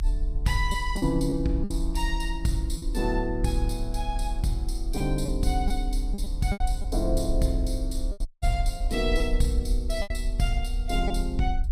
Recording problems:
low-frequency rumble; below 44 Hz, strongest tone 36 Hz, SNR 2 dB
packet loss; 5% of the sound replaced, filled with repeated pitch periods
dropout; at 8.5 s

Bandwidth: 15.5 kHz